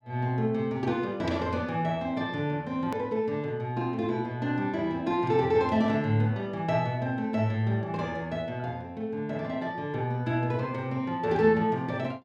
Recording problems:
edit click; at 3 s

